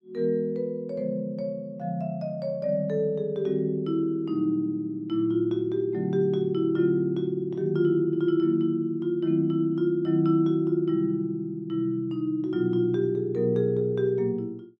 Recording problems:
none

